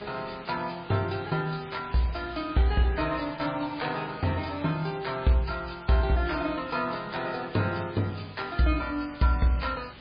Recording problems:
codec artefacts; MP3, log-spectral distance 8 dB, nothing above 4.8 kHz
hiss; SNR 18 dB

